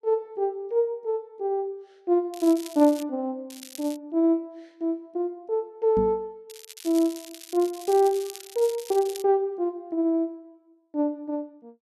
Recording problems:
crackling; at 2.5 s, at 3.5 s and from 6.5 to 9 s; loose cable, SNR 16 dB
knock on the microphone; at 6 s; peak 0 dB vs average level

